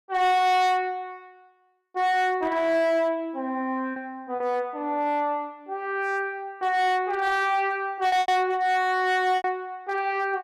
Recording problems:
distortion; hard clipping, signal-to-distortion ratio 11 dB
packet loss; 3% of the sound replaced, filled with repeated pitch periods

